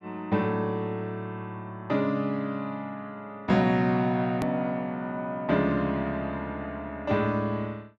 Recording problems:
edit click; at 4.5 s

